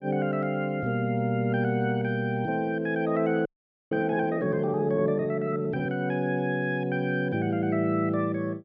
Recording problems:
frozen audio; at 3.5 s

